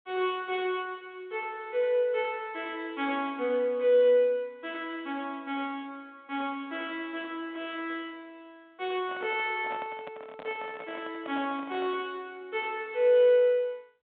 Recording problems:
telephone audio; 280 Hz to 3.7 kHz, G.726
microphone handling noise; from 9 to 12 s; peak -9 dB vs average level

